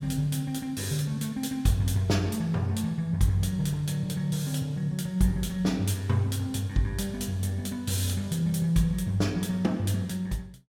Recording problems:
none

